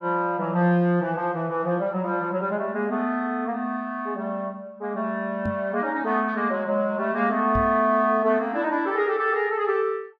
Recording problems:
microphone bump; at 5.5 s and at 7.5 s; peak -2 dB vs average level

